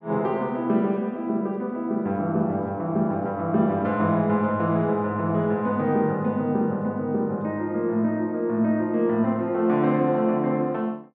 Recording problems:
none

